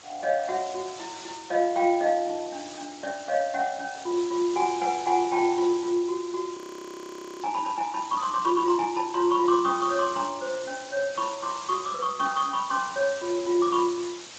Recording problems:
codec artefacts; Opus, then Speex, log-spectral distance 15 dB, nothing above 14.3 kHz
hiss; slope 0 dB per octave, SNR 15 dB
frozen audio; at 6.5 s for 1 s

